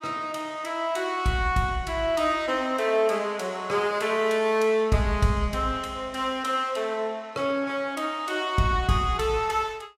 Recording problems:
none

